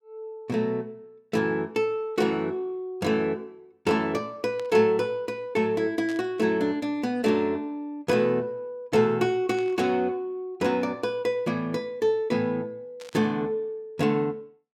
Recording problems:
burst of static; 4 times, first at 4.5 s; peak -12 dB vs average level

